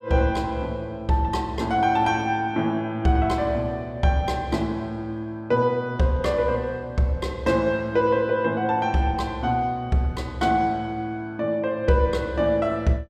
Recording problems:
none

